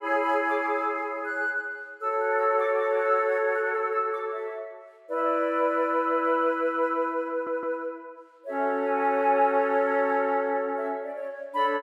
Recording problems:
audio stuttering; at 7.5 s

